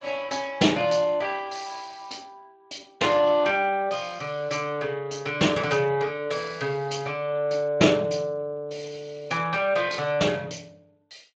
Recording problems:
lossy codec; Speex, log-spectral distance 5 dB

